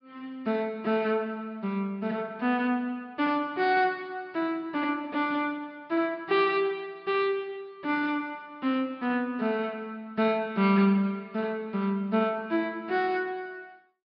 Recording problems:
treble cut off; nothing above 5.5 kHz

